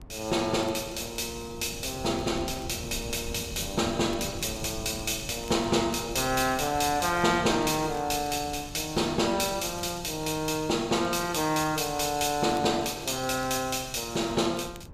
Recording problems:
wind noise; below 220 Hz, SNR 16 dB
crackle; vinyl, SNR 26 dB

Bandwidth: 15 kHz